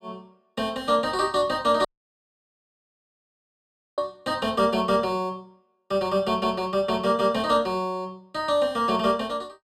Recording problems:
audio cutting out; at 2 s for 2 s

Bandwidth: 15.5 kHz